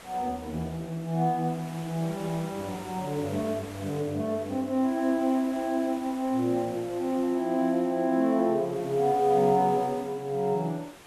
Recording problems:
background hiss; slope -4 dB per octave, SNR 18 dB

